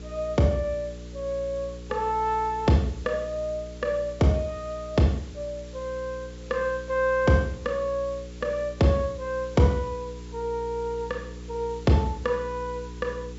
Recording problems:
treble missing; nothing above 8 kHz
hum; 60 Hz, harmonics up to 480 Hz, SNR 14 dB
background hiss; slope 0 dB per octave, SNR 24 dB

